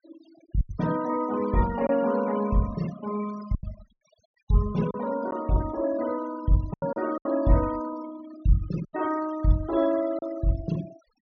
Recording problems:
treble cut off; nothing above 6.3 kHz
noise reduction artefacts; signal-to-artefact ratio 16 dB
lost packets; 5% of the sound replaced, filled with silence

